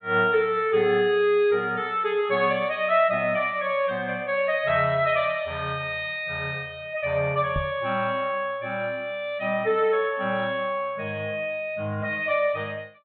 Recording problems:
treble missing; nothing above 4 kHz
knock on the microphone; at 7.5 s; peak -2 dB vs average level

